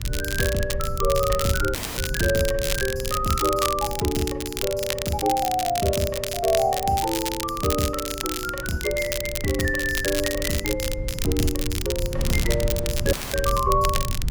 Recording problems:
electrical hum; 60 Hz, harmonics up to 960 Hz, SNR 21 dB
rumble; below 88 Hz, SNR 8 dB
wind noise; below 170 Hz, SNR 14 dB
crackle; vinyl, SNR 5 dB
audio cutting out; at 2 s and at 13 s

